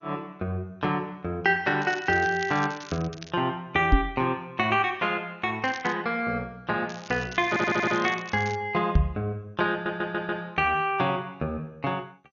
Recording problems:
lossy codec; MP2, log-spectral distance 4 dB, nothing above 6 kHz
crackle; from 2 to 3.5 s, at 5.5 s and from 7 to 8.5 s; loose cable, SNR 17 dB
microphone bump; at 4 s and at 9 s; peak +9 dB vs average level
stutter; at 7.5 s and at 9.5 s

